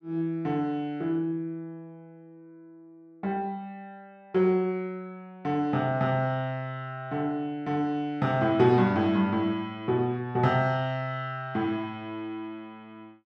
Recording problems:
none

